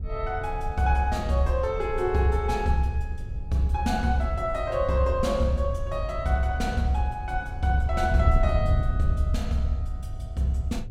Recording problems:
wind noise; below 90 Hz, SNR 6 dB

